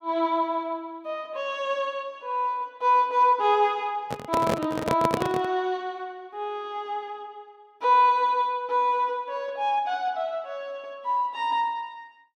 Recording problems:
handling noise; from 4 to 5.5 s; peak +4 dB vs average level

